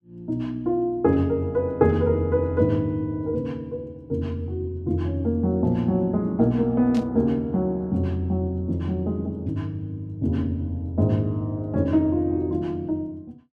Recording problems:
static burst; at 7 s; peak -12 dB vs average level

